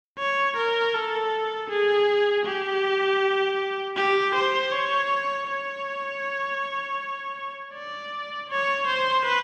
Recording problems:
none

